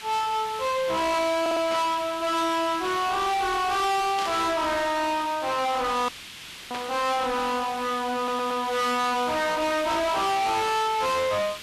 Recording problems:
distortion; soft clipping, signal-to-distortion ratio 6 dB
background hiss; SNR 12 dB
stutter; at 1.5 s and at 8 s
burst of static; 4 times, first at 1.5 s; peak -6 dB vs average level
dropout; at 6 s for 0.5 s

